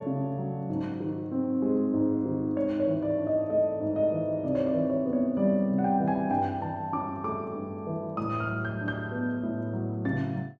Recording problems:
none

